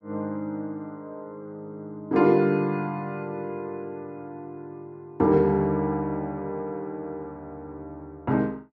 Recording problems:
none

